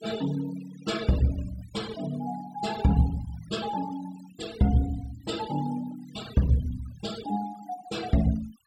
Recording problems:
noise reduction artefacts; signal-to-artefact ratio 14 dB

